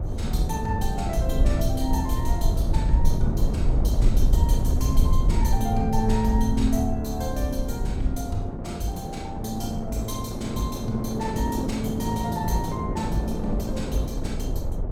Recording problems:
low-frequency rumble; below 70 Hz, SNR -1 dB
wind on the microphone; below 470 Hz, SNR 5 dB

